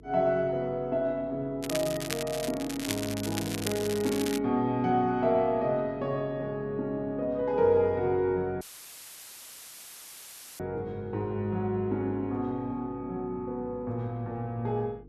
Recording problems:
hum; 50 Hz, harmonics up to 450 Hz, SNR 22 dB
crackle; from 1.5 to 4.5 s; loose cable, SNR 7 dB
audio cutting out; at 8.5 s for 2 s; filled with static

